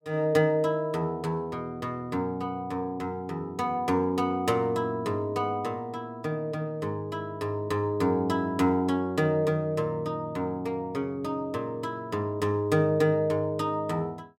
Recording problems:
none

